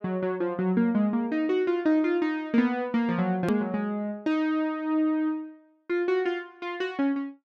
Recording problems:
click at an edit; at 3.5 s

